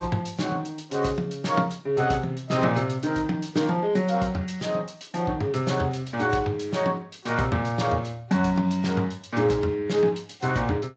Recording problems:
codec artefacts; MP3, then Speex, log-spectral distance 4 dB, nothing above 7.6 kHz

